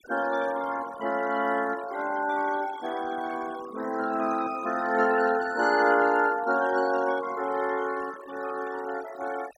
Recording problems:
noise reduction artefacts; signal-to-artefact ratio 16 dB

